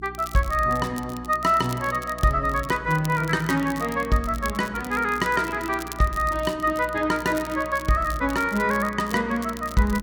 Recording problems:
hum; 60 Hz, harmonics up to 360 Hz, SNR 18 dB
crackling; vinyl, SNR 18 dB

